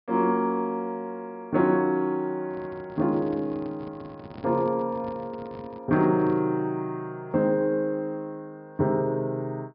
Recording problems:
treble missing; nothing above 5.5 kHz
handling noise; from 2.5 to 6.5 s; peak -11 dB vs average level

